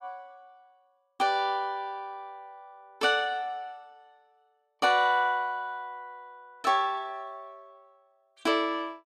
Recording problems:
none

